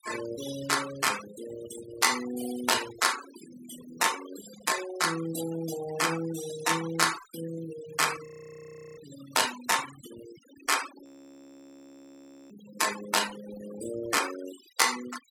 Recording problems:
noise reduction artefacts; signal-to-artefact ratio 10 dB
frozen audio; at 8.5 s for 0.5 s and at 11 s for 1.5 s

